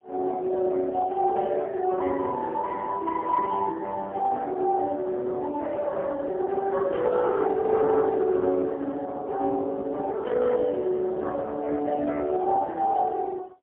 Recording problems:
telephone audio; 260 Hz to 3 kHz, AMR-NB, then MP3

